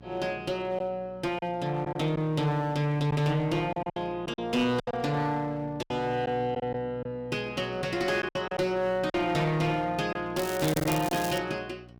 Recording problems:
distortion; hard clipping, uneven, signal-to-distortion ratio 10 dB
hum; 60 Hz, harmonics up to 1.1 kHz, SNR 21 dB
packet loss; 6% of the sound replaced, filled with silence
crackling; from 10 to 11 s; loose cable, SNR 9 dB

